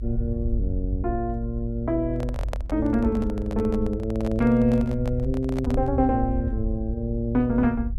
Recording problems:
rumble; below 72 Hz, SNR 6 dB
handling noise; from 2 to 6 s; peak -3 dB vs average level

